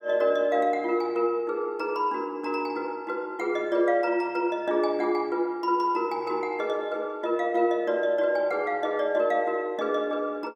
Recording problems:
none

